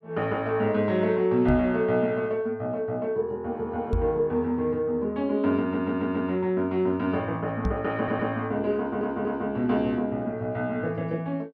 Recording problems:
microphone bump; at 1.5 s, at 4 s and at 7.5 s; peak +3 dB vs average level
audio stuttering; at 5.5 s, at 8 s and at 9 s

